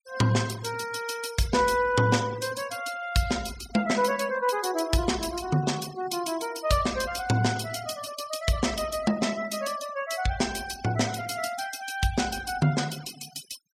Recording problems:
noise reduction artefacts; signal-to-artefact ratio 16 dB

